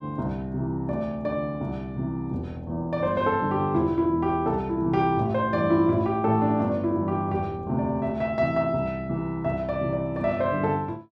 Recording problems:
none

